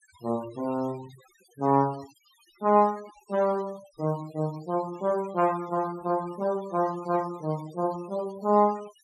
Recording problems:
denoising artefacts; signal-to-artefact ratio 22 dB

